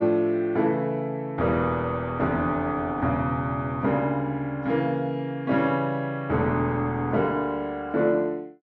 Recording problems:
none

